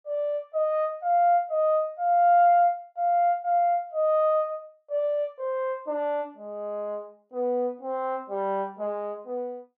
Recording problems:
none

